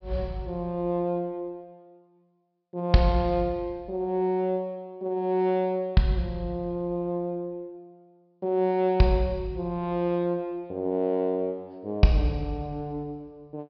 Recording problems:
treble missing; nothing above 5.5 kHz

